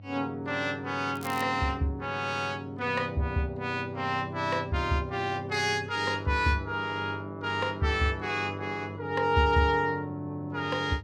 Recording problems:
hum; 50 Hz, harmonics up to 600 Hz, SNR 15 dB
crackling; at 1 s; loose cable, SNR 17 dB

